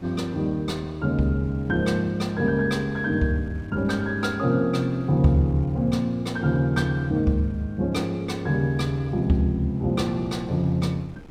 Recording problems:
wind on the microphone; below 330 Hz, SNR 23 dB

